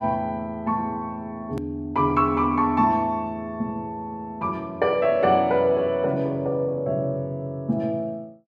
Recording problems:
edit click; at 1.5 s

